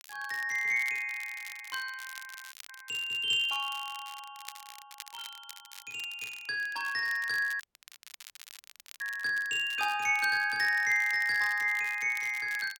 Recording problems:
crackling; vinyl, SNR 18 dB
audio cutting out; at 2.5 s and at 7.5 s for 1.5 s

